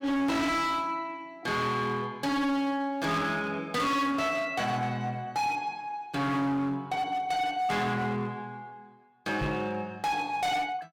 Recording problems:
distorted audio; hard clipping, signal-to-distortion ratio 7 dB
microphone bump; at 9.5 s; peak 0 dB vs average level

